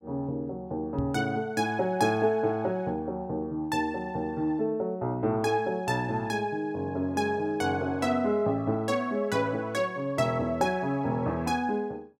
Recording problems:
microphone thump; at 1 s; peak -2 dB vs average level

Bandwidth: 16 kHz